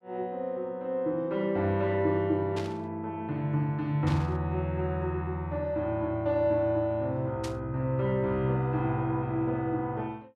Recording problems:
burst of static; at 2.5 s, at 4 s and at 7.5 s; peak -6 dB vs average level

